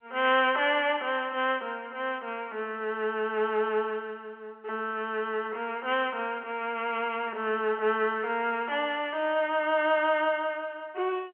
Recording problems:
phone line; 320 Hz to 3.3 kHz, G.711

